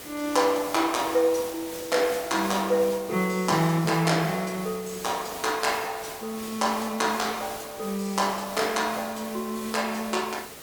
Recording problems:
background hiss; slope -3 dB per octave, SNR 12 dB

